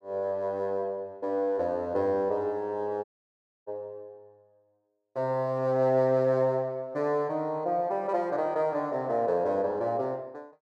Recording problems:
dropout; at 3 s for 0.5 s

